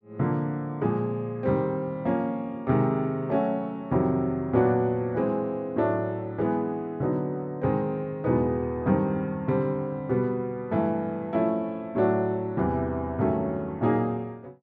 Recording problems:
none

